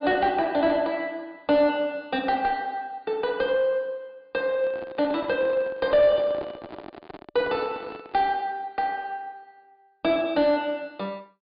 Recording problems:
low-pass filter; nothing above 4.9 kHz
distorted audio; soft clipping, signal-to-distortion ratio 11 dB
handling noise; from 4.5 to 8.5 s; peak -7 dB vs average level

